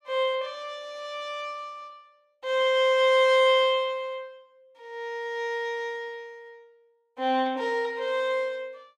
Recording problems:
none

